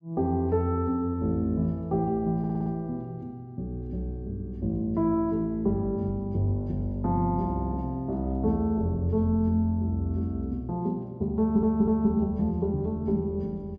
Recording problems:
stutter; at 2.5 s and at 11 s

